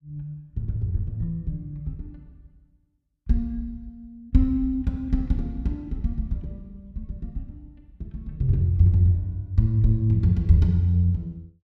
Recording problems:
none

